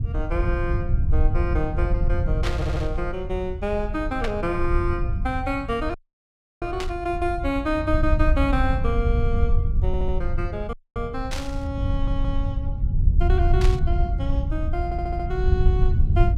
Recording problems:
rumble; below 82 Hz, SNR -3 dB
burst of static; 5 times, first at 2.5 s; peak +2 dB vs average level
audio stuttering; 4 times, first at 2.5 s
audio cutting out; at 6 s for 0.5 s and at 11 s

